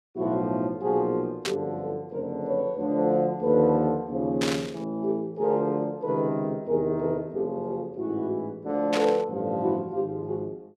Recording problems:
static burst; at 1.5 s, at 4.5 s and at 9 s; peak +1 dB vs average level

